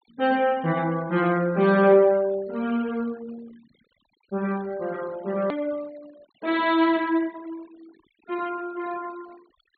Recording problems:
treble missing; nothing above 4.4 kHz
denoising artefacts; signal-to-artefact ratio 25 dB
hard cut with a click; at 5.5 s

